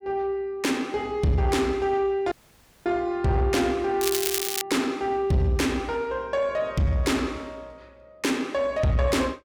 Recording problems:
distortion; soft clipping, signal-to-distortion ratio 12 dB
dropout; at 2.5 s for 0.5 s
crackle; at 4 s; loose cable, SNR 2 dB

